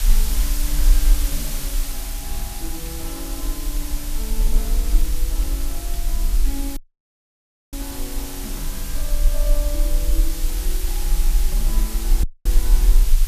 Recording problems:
background hiss; slope +1 dB per octave, SNR -4 dB
rumble; below 40 Hz, strongest tone 26 Hz, SNR -11 dB
wind noise; below 80 Hz, SNR 8 dB
audio cutting out; at 7 s for 1 s and at 12 s

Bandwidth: 14.5 kHz